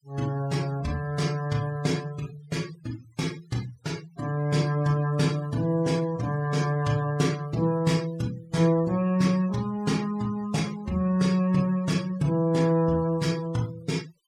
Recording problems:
denoising artefacts; signal-to-artefact ratio 19 dB

